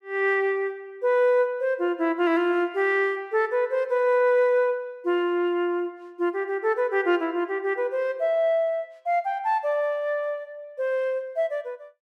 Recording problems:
none

